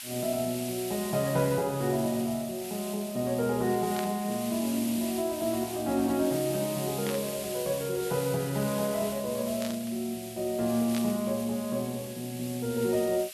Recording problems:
background hiss; SNR 10 dB
burst of static; 4 times, first at 4 s; peak -4 dB vs average level

